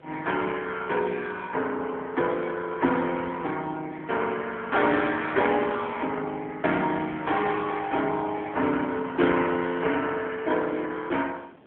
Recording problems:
phone line; 220 Hz to 3.4 kHz, AMR-NB
wind on the microphone; below 790 Hz, SNR 23 dB

